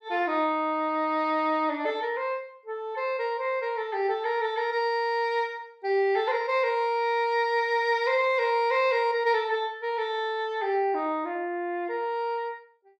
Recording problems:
none

